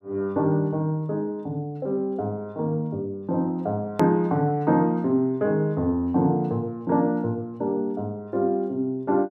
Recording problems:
hard cut with a click; at 4 s

